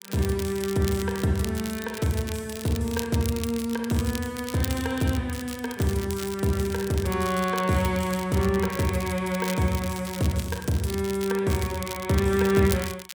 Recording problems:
crackle; vinyl, SNR 12 dB

